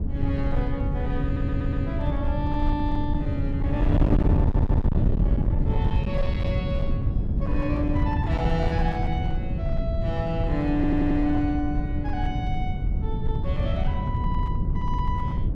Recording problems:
distortion; hard clipping, signal-to-distortion ratio 12 dB
wind noise; below 130 Hz, SNR -3 dB
stutter; at 1.5 s, at 4.5 s and at 11 s

